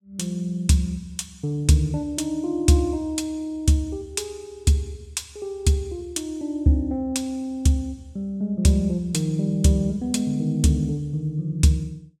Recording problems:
none

